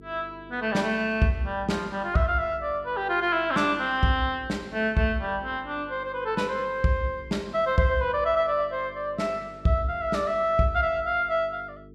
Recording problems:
electrical hum; 50 Hz, harmonics up to 450 Hz, SNR 22 dB

